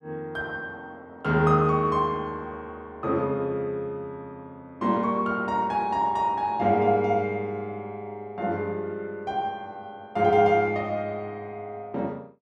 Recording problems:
none

